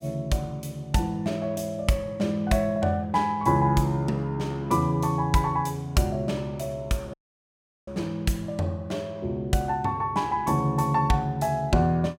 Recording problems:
dropout; at 7 s for 0.5 s

